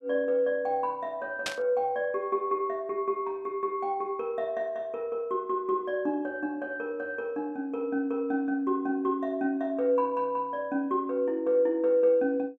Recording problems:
burst of static; at 1.5 s; peak +2 dB vs average level

